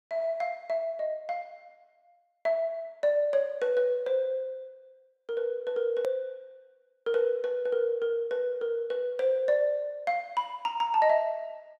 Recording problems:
click at an edit; at 6 s

